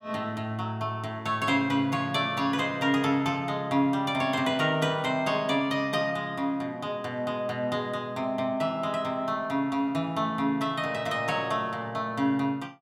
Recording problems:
none

